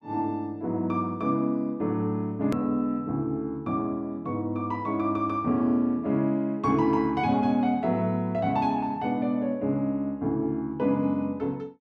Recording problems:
hard cut with a click; at 2.5 s

